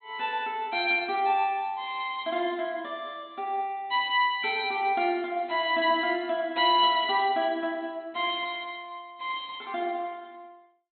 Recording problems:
treble cut off; nothing above 4 kHz

